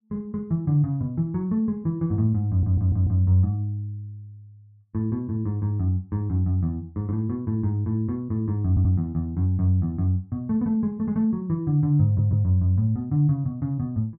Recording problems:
stutter; at 2.5 s, at 8.5 s and at 12 s

